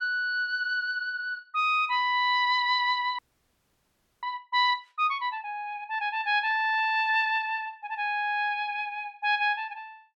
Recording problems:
audio freezing; at 3 s for 1 s

